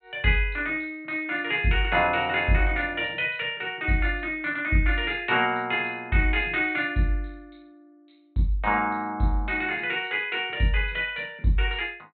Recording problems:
treble missing; nothing above 4 kHz

